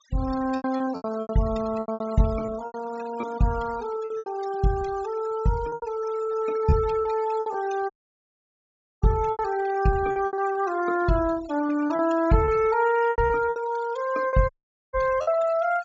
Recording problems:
low-pass filter; nothing above 8 kHz
denoising artefacts; signal-to-artefact ratio 18 dB
lost packets; 12% of the sound replaced, filled with repeated pitch periods
dropout; at 8 s for 1 s and at 14 s

